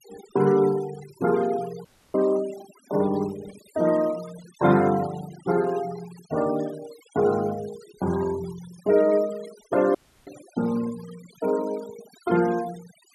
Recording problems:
noise reduction artefacts; signal-to-artefact ratio 19 dB
audio cutting out; at 2 s and at 10 s

